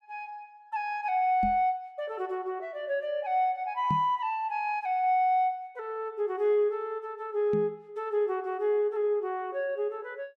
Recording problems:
microphone bump; at 1.5 s, at 4 s and at 7.5 s; peak +1 dB vs average level

